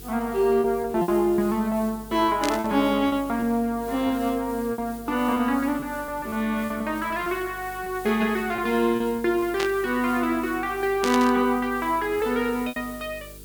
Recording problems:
electrical hum; 50 Hz, harmonics up to 450 Hz, SNR 22 dB
background hiss; SNR 19 dB
packet loss; 6% of the sound replaced, filled with repeated pitch periods
burst of static; at 2.5 s, at 9.5 s and at 11 s; peak -1 dB vs average level

